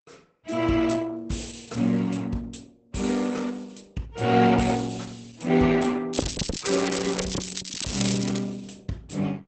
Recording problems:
lossy compression; Opus, log-spectral distance 9 dB, nothing above 8.2 kHz
crackling; from 6 to 8.5 s; loose cable, SNR 7 dB

